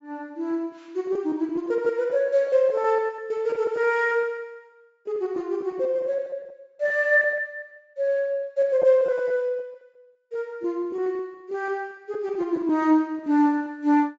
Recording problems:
low-pass filter; nothing above 8 kHz
packet loss; 11% of the sound replaced, filled with repeated pitch periods

